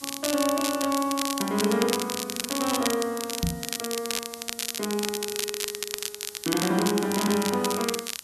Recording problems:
background hiss; SNR 17 dB
crackling; vinyl, SNR 3 dB
microphone bump; at 3.5 s; peak +4 dB vs average level

